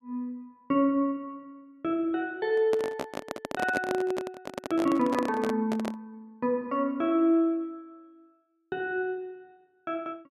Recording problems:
microphone handling noise; from 2.5 to 6 s; peak +2 dB vs average level

